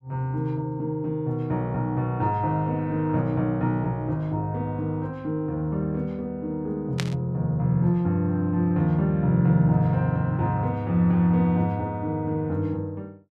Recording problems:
static burst; at 7 s; peak -1 dB vs average level

